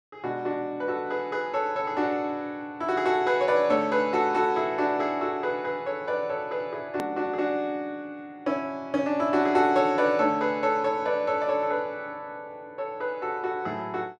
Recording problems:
edit click; at 7 s

